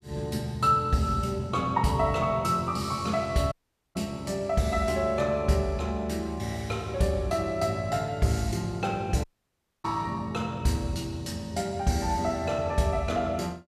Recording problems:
dropout; at 3.5 s and at 9 s for 0.5 s

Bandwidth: 14.5 kHz